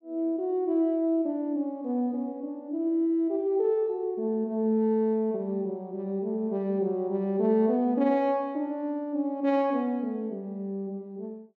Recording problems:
none

